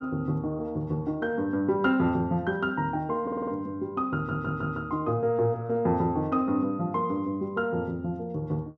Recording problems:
stutter; at 3 s and at 4 s

